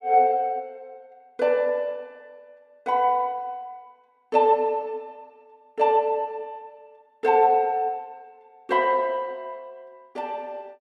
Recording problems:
none

